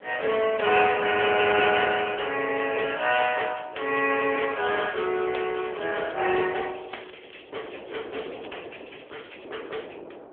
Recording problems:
phone line; 300 Hz to 3.4 kHz, AMR-NB
wind on the microphone; below 670 Hz, SNR 20 dB
crackling; from 4.5 to 8 s and from 8 to 9.5 s; loose cable, SNR 27 dB

